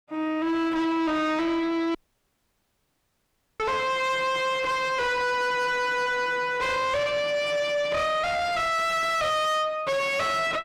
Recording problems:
distortion; soft clipping, signal-to-distortion ratio 5 dB
dropout; at 2 s for 1.5 s

